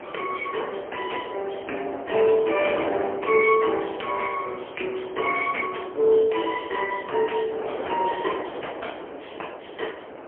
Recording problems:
telephone audio; 280 Hz to 3.2 kHz, AMR-NB, then MP3
wind on the microphone; below 880 Hz, SNR 11 dB

